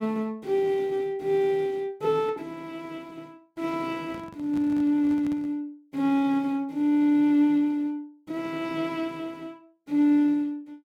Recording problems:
microphone handling noise; from 4 to 5.5 s; peak -10 dB vs average level

